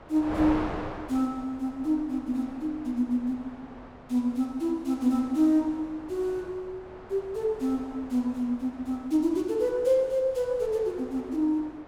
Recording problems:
wind noise; below 1 kHz, SNR 14 dB

